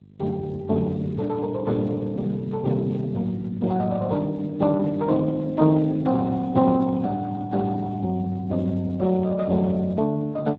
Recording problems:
lossy codec; Speex, log-spectral distance 2 dB
hum; 50 Hz, harmonics up to 450 Hz, SNR 22 dB

